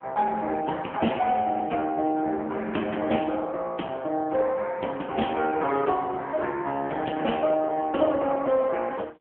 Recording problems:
telephone audio; 240 Hz to 3.3 kHz, AMR-NB

